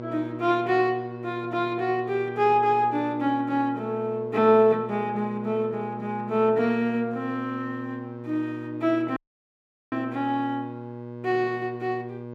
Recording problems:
mains hum; 60 Hz, harmonics up to 1.6 kHz, SNR 12 dB
dropout; at 9 s for 1 s

